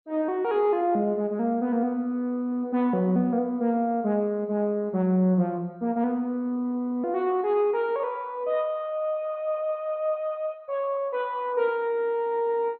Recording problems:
codec artefacts; MP2, log-spectral distance 2 dB, nothing above 3.8 kHz

